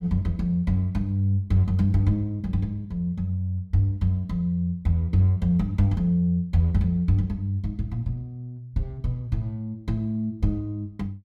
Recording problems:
none

